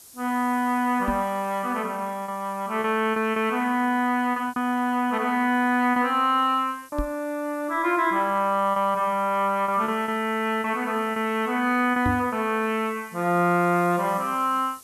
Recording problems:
hiss; SNR 24 dB
packet loss; 5% of the sound replaced, filled with repeated pitch periods
knock on the microphone; at 1 s, at 7 s and at 12 s; peak 0 dB vs average level

